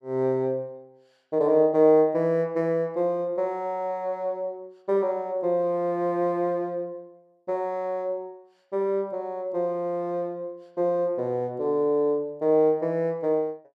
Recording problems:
none

